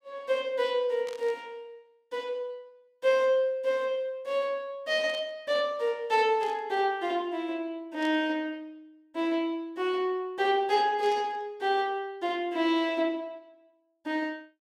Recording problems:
static burst; 5 times, first at 1 s; peak -12 dB vs average level

